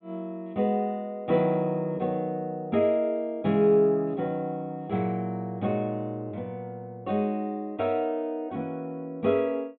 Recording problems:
treble missing; nothing above 4 kHz

